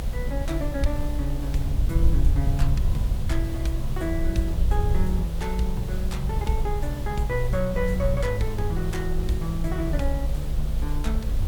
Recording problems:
hiss; SNR 11 dB
rumble; below 64 Hz, strongest tone 22 Hz, SNR -1 dB

